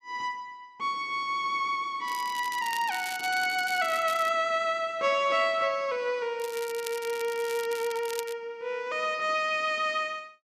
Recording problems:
crackle; from 2 to 4.5 s and from 6.5 to 8.5 s; loose cable, SNR 13 dB

